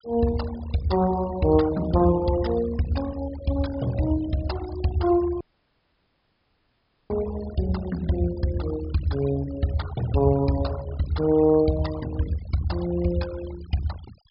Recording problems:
treble missing; nothing above 5.5 kHz
noise reduction artefacts; signal-to-artefact ratio 17 dB
audio cutting out; at 5.5 s for 1.5 s

